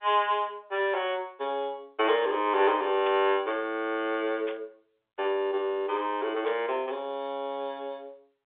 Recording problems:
telephone audio; 340 Hz to 3.6 kHz, G.711
static burst; at 3 s, at 4.5 s and at 6.5 s; peak -8 dB vs average level

